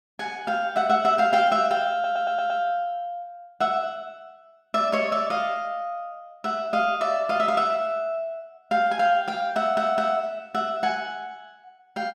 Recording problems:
audio stuttering; at 2 s and at 9.5 s

